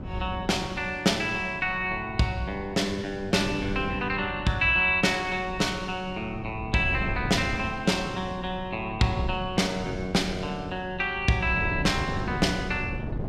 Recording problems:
wind noise; below 230 Hz, SNR 11 dB

